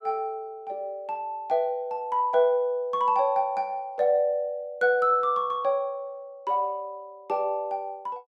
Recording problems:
none

